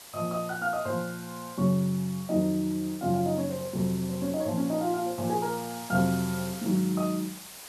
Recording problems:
background hiss; slope 0 dB per octave, SNR 14 dB

